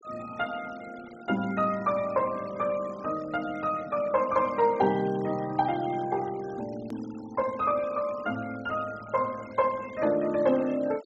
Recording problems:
treble cut off; nothing above 8 kHz
noise reduction artefacts; signal-to-artefact ratio 20 dB
click at an edit; at 7 s

